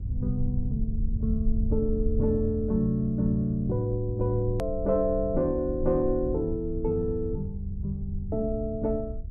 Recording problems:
low-frequency rumble; below 68 Hz, SNR 7 dB
edit click; at 4.5 s

